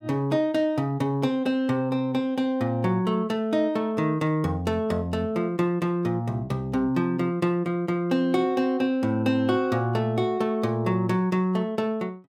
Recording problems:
none

